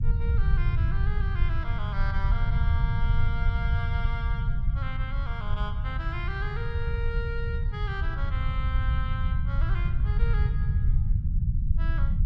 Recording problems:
low-frequency rumble; below 90 Hz, SNR -9 dB

